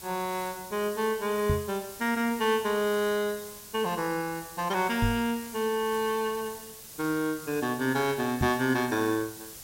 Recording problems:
background hiss; SNR 14 dB
knock on the microphone; at 1.5 s, at 5 s and at 8.5 s; peak +4 dB vs average level

